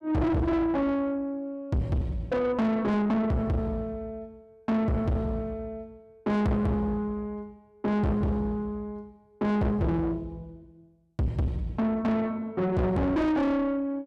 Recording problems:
distortion; soft clipping, signal-to-distortion ratio 7 dB

